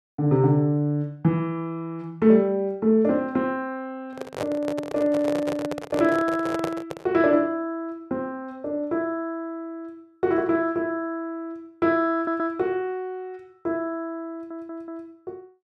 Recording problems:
microphone handling noise; from 4 to 7 s; peak -1 dB vs average level
audio stuttering; at 12 s and at 14 s

